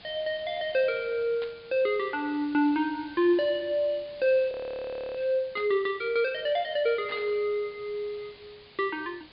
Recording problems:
treble missing; nothing above 4.9 kHz
background hiss; SNR 22 dB
static burst; at 1.5 s, at 5.5 s and at 7 s; peak -10 dB vs average level
frozen audio; at 4.5 s for 0.5 s

